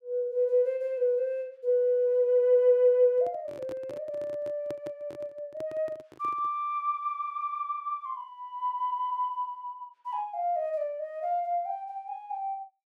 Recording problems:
microphone handling noise; from 3 to 6.5 s; peak -8 dB vs average level

